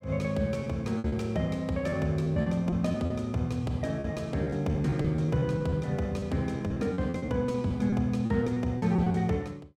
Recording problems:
lost packets; 12% of the sound replaced, filled with repeated pitch periods

